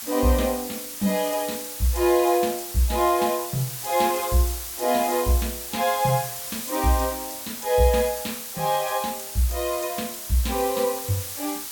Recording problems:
hiss; slope +2 dB per octave, SNR 7 dB

